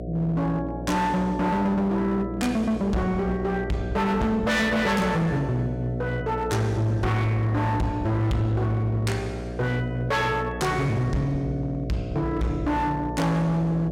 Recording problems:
distortion; hard clipping, uneven, signal-to-distortion ratio 8 dB
electrical hum; 60 Hz, harmonics up to 720 Hz, SNR 9 dB

